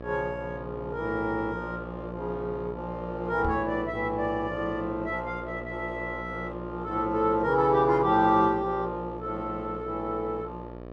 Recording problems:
hum; 60 Hz, harmonics up to 1.8 kHz, SNR 11 dB
knock on the microphone; at 3.5 s; peak -1 dB vs average level

